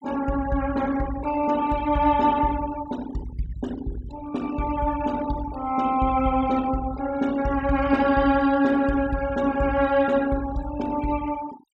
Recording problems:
noise reduction artefacts; signal-to-artefact ratio 19 dB

